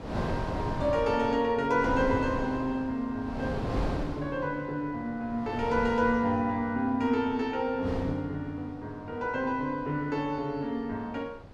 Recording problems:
wind noise; below 590 Hz, SNR 7 dB

